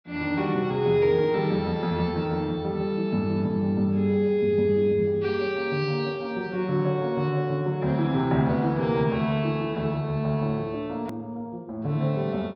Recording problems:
treble cut off; nothing above 5.5 kHz
click at an edit; at 11 s

